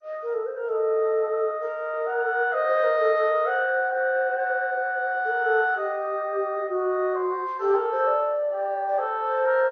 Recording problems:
lossy codec; MP2, log-spectral distance 2 dB, nothing above 6.2 kHz

